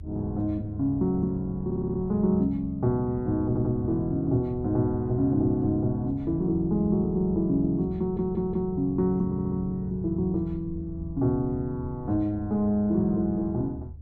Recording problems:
low-frequency rumble; below 98 Hz, strongest tone 76 Hz, SNR 14 dB
audio stuttering; 4 times, first at 1.5 s

